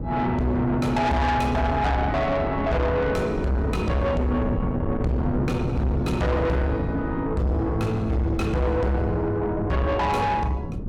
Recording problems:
distorted audio; soft clipping, signal-to-distortion ratio 7 dB
wind noise; below 280 Hz, SNR 8 dB

